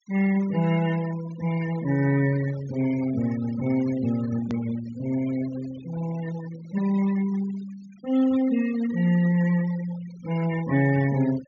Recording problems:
low-pass filter; nothing above 7 kHz
denoising artefacts; signal-to-artefact ratio 17 dB
click at an edit; at 4.5 s

